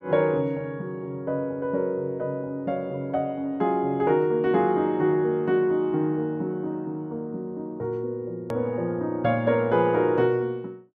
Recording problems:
hard cut with a click; at 8.5 s

